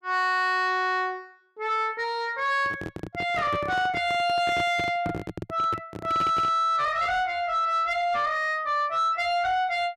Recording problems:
distortion; soft clipping, signal-to-distortion ratio 12 dB
microphone handling noise; from 2.5 to 6.5 s; peak -2 dB vs average level

